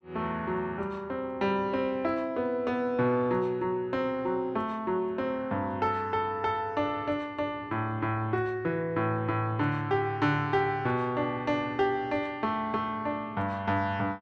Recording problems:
none

